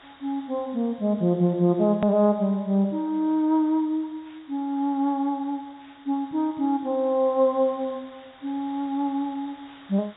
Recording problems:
treble missing; nothing above 4 kHz
hiss; SNR 27 dB
edit click; at 2 s

